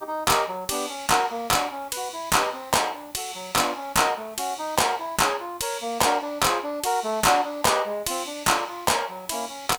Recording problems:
distortion; soft clipping, signal-to-distortion ratio 7 dB
hiss; SNR 26 dB

